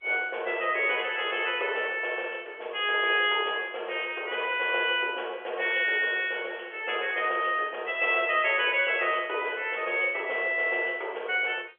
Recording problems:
phone line; 340 Hz to 3.4 kHz, G.711

